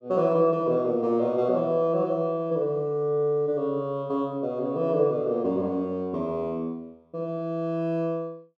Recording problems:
none

